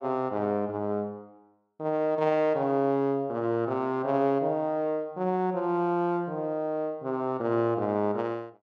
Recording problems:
none

